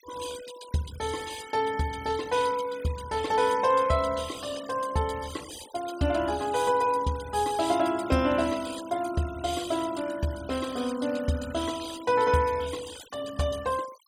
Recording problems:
noise reduction artefacts; signal-to-artefact ratio 16 dB

